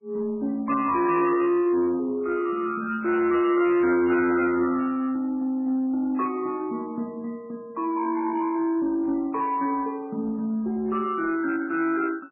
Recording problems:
codec artefacts; MP3, log-spectral distance 2 dB, nothing above 2.8 kHz
distorted audio; soft clipping, signal-to-distortion ratio 11 dB

